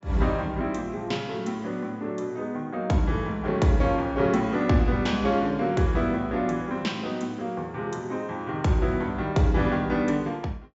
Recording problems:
low-pass filter; nothing above 7.5 kHz

